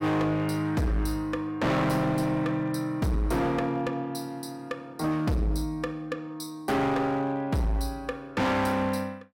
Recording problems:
distortion; hard clipping, signal-to-distortion ratio 8 dB

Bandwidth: 16.5 kHz